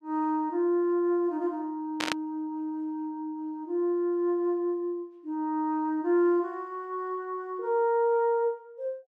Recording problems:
static burst; at 2 s; peak +4 dB vs average level

